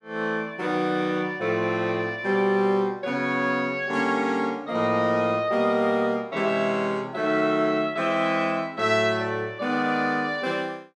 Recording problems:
none

